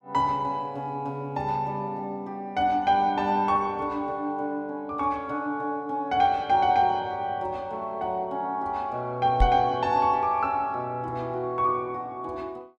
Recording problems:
microphone thump; at 9.5 s; peak +6 dB vs average level

